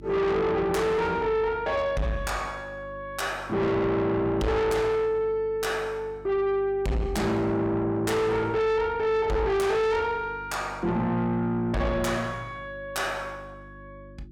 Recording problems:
distortion; soft clipping, signal-to-distortion ratio 6 dB
hum; 50 Hz, harmonics up to 350 Hz, SNR 21 dB

